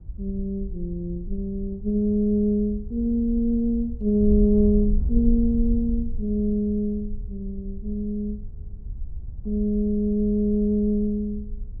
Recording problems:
wind on the microphone; below 60 Hz, SNR 9 dB

